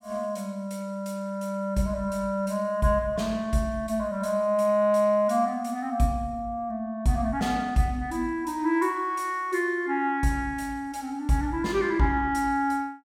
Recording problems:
none

